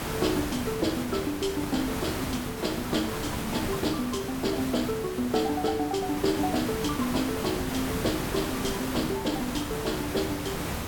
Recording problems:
hiss; slope -5 dB per octave, SNR 3 dB

